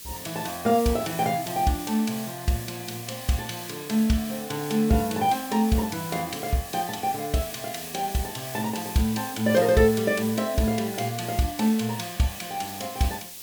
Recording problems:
hiss; SNR 11 dB

